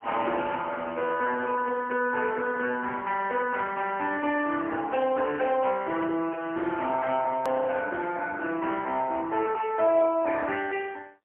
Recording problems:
telephone audio; 260 Hz to 3 kHz, AMR-NB, then MP3
click at an edit; at 7.5 s

